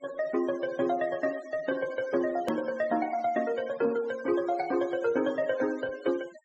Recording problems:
low-pass filter; nothing above 8 kHz
noise reduction artefacts; signal-to-artefact ratio 20 dB
hard cut with a click; at 2.5 s

